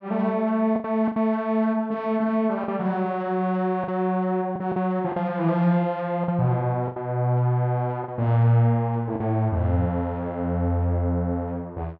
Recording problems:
packet loss; 5% of the sound replaced, filled with the last packet

